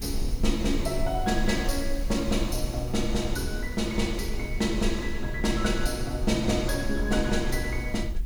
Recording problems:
background hiss; SNR 24 dB
low-frequency rumble; below 50 Hz, strongest tone 24 Hz, SNR 6 dB

